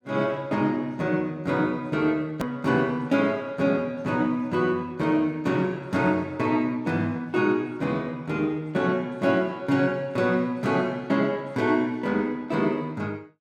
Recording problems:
hard cut with a click; at 2.5 s

